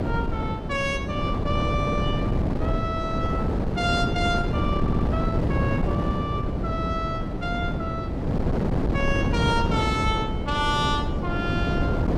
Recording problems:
hum; 60 Hz, harmonics up to 660 Hz, SNR 13 dB
wind noise; below 340 Hz, SNR -2 dB
audio stuttering; at 5 s

